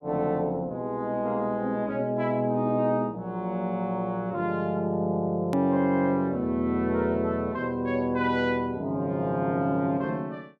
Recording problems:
edit click; at 5.5 s

